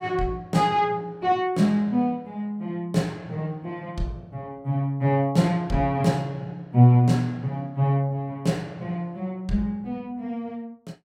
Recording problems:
none

